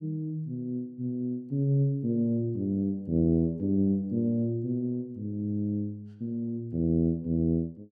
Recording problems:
none

